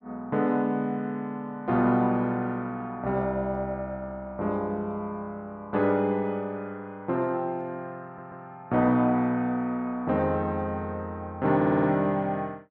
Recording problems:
stutter; at 8 s and at 12 s

